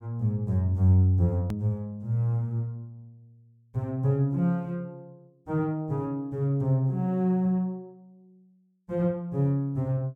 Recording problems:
hard cut with a click; at 1.5 s

